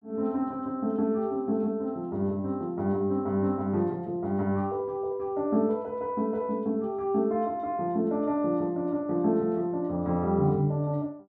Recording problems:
none

